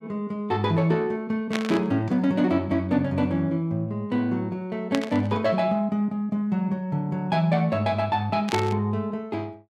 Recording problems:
static burst; at 1.5 s, at 5 s and at 8.5 s; peak 0 dB vs average level

